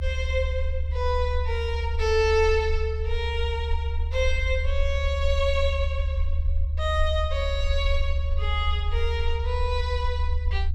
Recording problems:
rumble; below 74 Hz, SNR 0 dB

